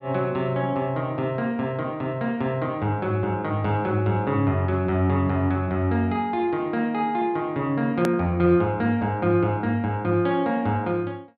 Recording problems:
click at an edit; at 8 s

